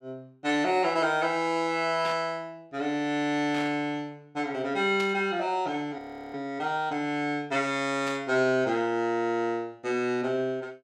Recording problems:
burst of static; 4 times, first at 2 s; peak -6 dB vs average level
audio freezing; at 6 s

